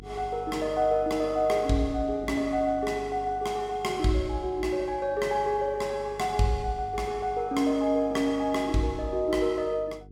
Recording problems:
electrical hum; 50 Hz, harmonics up to 450 Hz, SNR 20 dB

